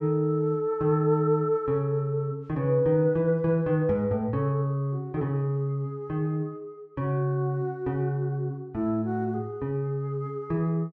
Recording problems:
none

